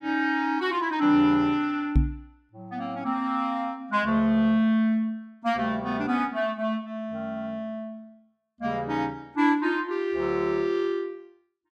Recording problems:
knock on the microphone; at 2 s; peak +8 dB vs average level

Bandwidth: 14 kHz